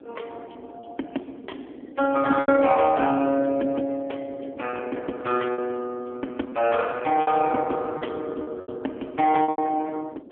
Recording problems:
telephone audio; 240 Hz to 2 kHz, AMR-NB
wind noise; below 440 Hz, SNR 18 dB
lost packets; 6% of the sound replaced, filled with repeated pitch periods

